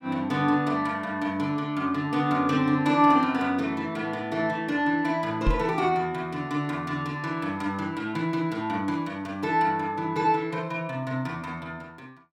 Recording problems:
microphone thump; at 5.5 s; peak +4 dB vs average level

